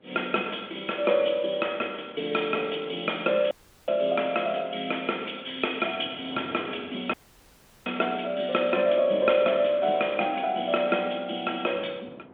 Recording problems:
phone line; 220 Hz to 3.4 kHz, G.726
wind on the microphone; below 600 Hz, SNR 22 dB
dropout; at 3.5 s and at 7 s for 0.5 s

